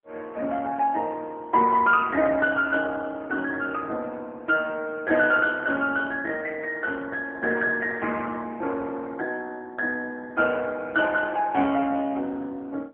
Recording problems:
telephone audio; 240 Hz to 2.8 kHz, AMR-NB

